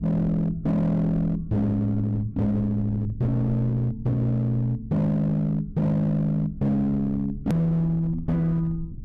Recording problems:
distortion; hard clipping, signal-to-distortion ratio 11 dB
low-frequency rumble; below 120 Hz, SNR 16 dB
click at an edit; at 7.5 s

